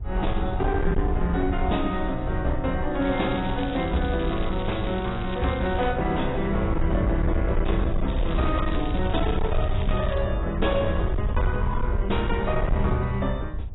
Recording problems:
lossy compression; AAC, log-spectral distance 4 dB, nothing above 3.8 kHz
distortion; hard clipping, signal-to-distortion ratio 10 dB
rumble; below 80 Hz, SNR 3 dB
wind noise; below 480 Hz, SNR 19 dB
crackle; from 3 to 6 s and from 8 to 10 s; loose cable, SNR 15 dB

